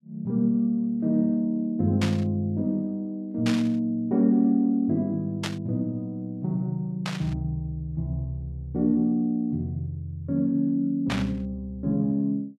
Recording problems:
burst of static; 5 times, first at 2 s; peak -1 dB vs average level

